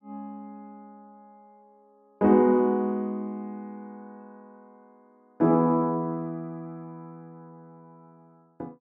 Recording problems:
none

